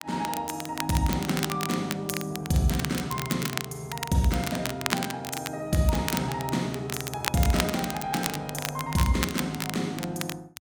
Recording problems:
crackle; vinyl, SNR 5 dB

